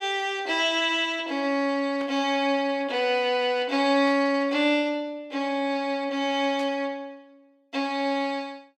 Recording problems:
burst of static; at 2 s, at 4 s and at 6.5 s; peak -13 dB vs average level

